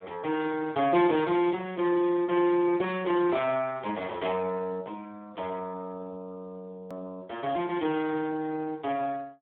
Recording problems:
telephone audio; 240 Hz to 3 kHz, Speex
edit click; at 7 s

